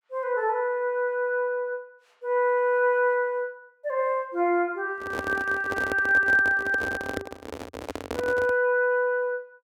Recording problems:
microphone handling noise; from 5 to 8.5 s; peak -2 dB vs average level

